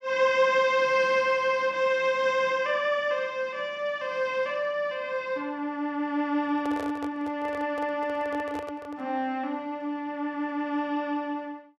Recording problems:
handling noise; from 6.5 to 9 s; peak -6 dB vs average level

